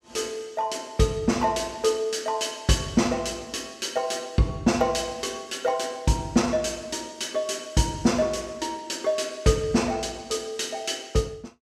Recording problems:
none

